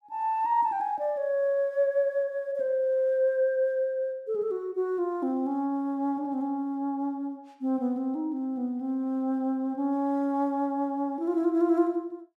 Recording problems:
none

